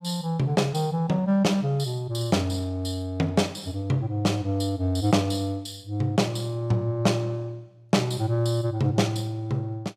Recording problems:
none

